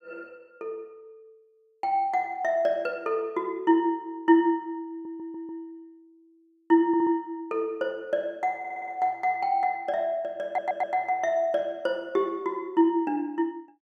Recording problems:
stutter; 4 times, first at 5 s

